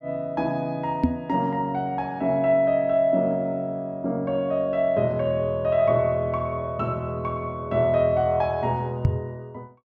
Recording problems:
microphone thump; at 1 s and at 9 s; peak +7 dB vs average level

